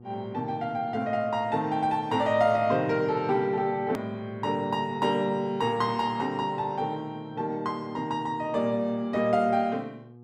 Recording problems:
hum; 60 Hz, harmonics up to 840 Hz, SNR 21 dB
edit click; at 4 s

